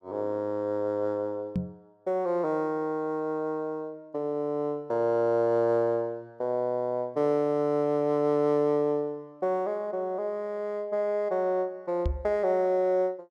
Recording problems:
microphone bump; at 1.5 s and at 12 s; peak +2 dB vs average level

